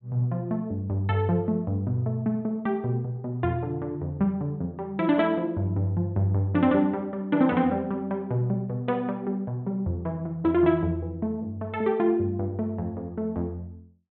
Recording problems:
treble missing; nothing above 4 kHz

